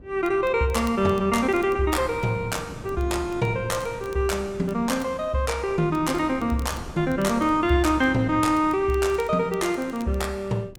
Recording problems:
wind noise; below 320 Hz, SNR 18 dB
crackle; vinyl, SNR 28 dB

